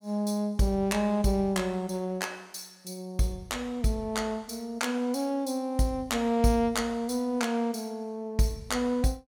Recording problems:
none

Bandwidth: 18 kHz